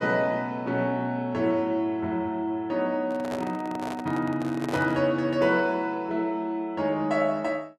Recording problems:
handling noise; from 3 to 5 s; peak -2 dB vs average level

